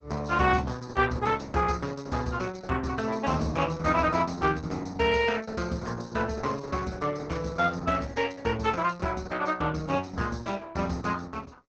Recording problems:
lossy compression; Opus, log-spectral distance 5 dB

